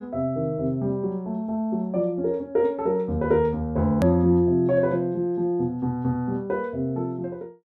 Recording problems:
hard cut with a click; at 4 s

